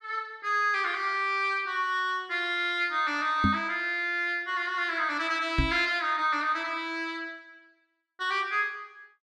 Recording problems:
knock on the microphone; at 3.5 s and at 5.5 s; peak +5 dB vs average level

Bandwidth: 14 kHz